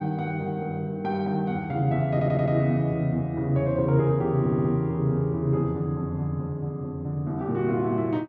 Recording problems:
stutter; at 2 s and at 4.5 s

